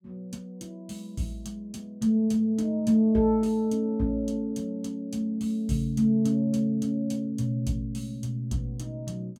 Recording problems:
none

